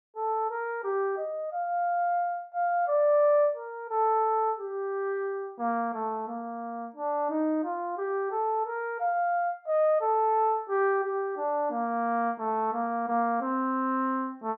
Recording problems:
none

